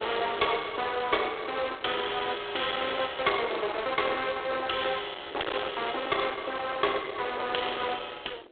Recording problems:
telephone audio; 300 Hz to 3.7 kHz, G.726
distortion; hard clipping, uneven, signal-to-distortion ratio 9 dB
wind on the microphone; below 2.6 kHz, SNR 13 dB

